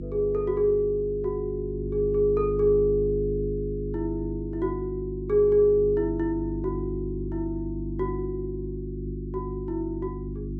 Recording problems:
hum; 50 Hz, harmonics up to 350 Hz, SNR 7 dB

